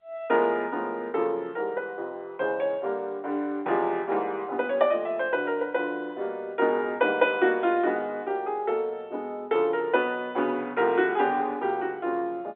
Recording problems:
phone line; 260 Hz to 3.6 kHz, G.711

